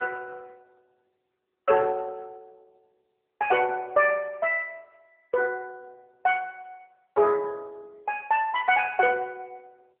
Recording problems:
phone line; 390 Hz to 3.3 kHz, AMR-NB

